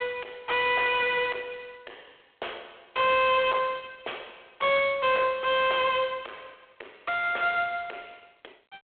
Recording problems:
telephone audio; 340 Hz to 3.4 kHz, G.726
distorted audio; soft clipping, signal-to-distortion ratio 7 dB

